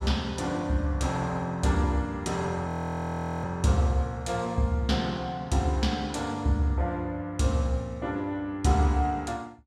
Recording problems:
frozen audio; at 2.5 s for 1 s

